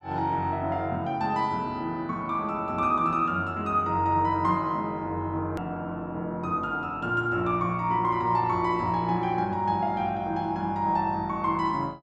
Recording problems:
hard cut with a click; at 5.5 s

